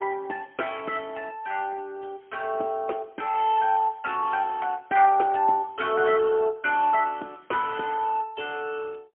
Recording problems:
telephone audio; 280 Hz to 3.3 kHz, AMR-NB, then MP3

